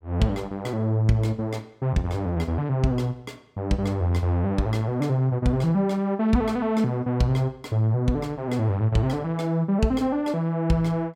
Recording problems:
none

